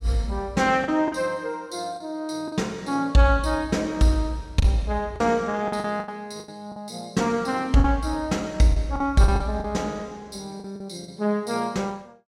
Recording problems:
packet loss; 7% of the sound replaced, filled with the last packet

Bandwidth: 16 kHz